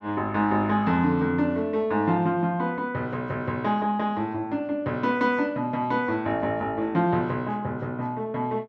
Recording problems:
none

